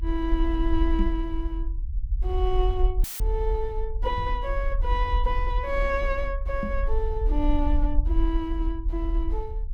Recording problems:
low-frequency rumble; below 48 Hz, strongest tone 38 Hz, SNR -1 dB
microphone thump; at 1 s, at 4 s and at 6.5 s; peak +3 dB vs average level
dropout; at 3 s; filled with static

